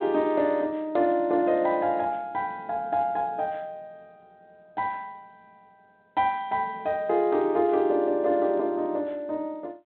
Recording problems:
phone line; 130 Hz to 4 kHz, G.726

